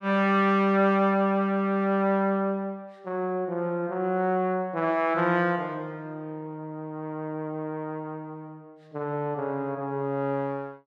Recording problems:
none

